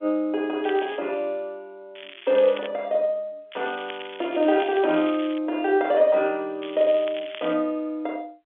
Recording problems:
telephone audio; 220 Hz to 3.5 kHz, G.711
crackle; 4 times, first at 0.5 s; loose cable, SNR 17 dB

